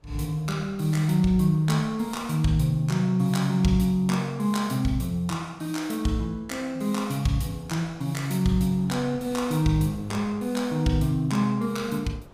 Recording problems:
wind on the microphone; below 630 Hz, SNR 26 dB

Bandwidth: 15.5 kHz